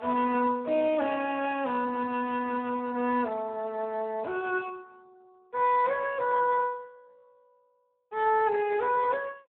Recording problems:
telephone audio; 260 Hz to 3.1 kHz, Speex

